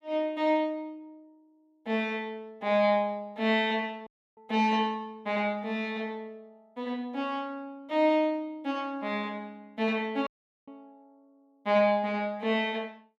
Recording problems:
dropout; at 4 s and at 10 s

